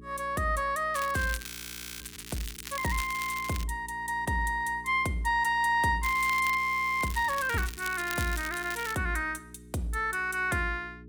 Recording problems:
hum; 60 Hz, harmonics up to 420 Hz, SNR 21 dB
crackle; from 1 to 3.5 s and from 6 to 9 s; loose cable, SNR 12 dB
audio freezing; at 1.5 s for 0.5 s and at 6.5 s

